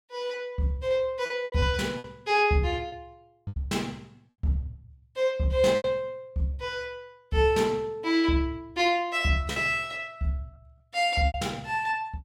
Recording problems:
lost packets; 5% of the sound replaced, filled with repeated pitch periods

